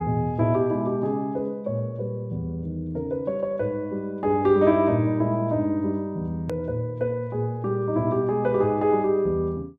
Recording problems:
click at an edit; at 6.5 s

